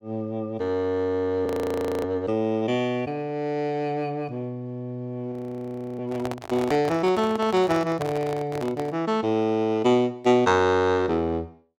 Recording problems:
frozen audio; at 1.5 s for 0.5 s and at 5.5 s for 0.5 s
handling noise; from 6 to 9 s; peak -3 dB vs average level

